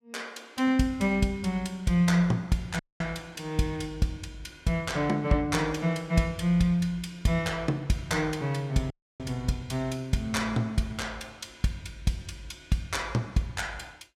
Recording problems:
audio cutting out; at 3 s and at 9 s

